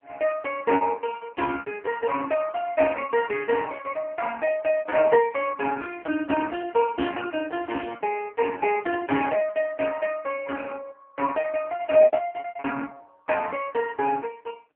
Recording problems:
phone line; 220 Hz to 2.8 kHz, AMR-NB
packet loss; 12% of the sound replaced, filled with repeated pitch periods

